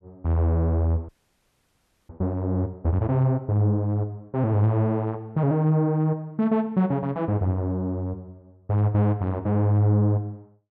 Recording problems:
audio freezing; at 1 s for 1 s

